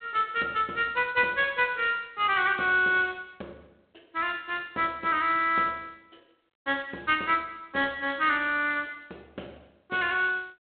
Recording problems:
phone line; 240 Hz to 3.6 kHz, G.726

